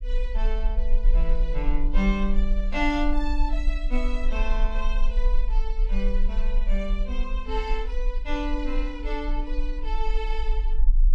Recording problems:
low-frequency rumble; below 36 Hz, strongest tone 22 Hz, SNR -3 dB

